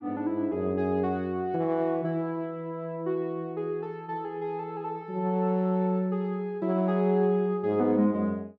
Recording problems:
none

